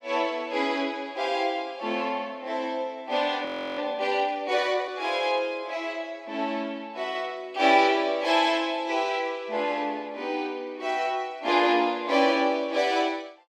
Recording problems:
frozen audio; at 3.5 s

